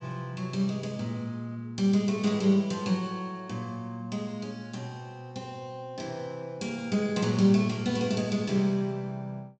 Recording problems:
treble missing; nothing above 8 kHz

